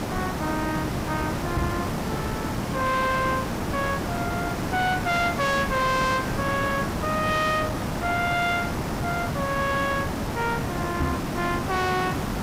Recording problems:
distortion; hard clipping, uneven, signal-to-distortion ratio 10 dB
hiss; slope -6 dB per octave, SNR 2 dB
microphone thump; at 1.5 s and at 11 s; peak +4 dB vs average level

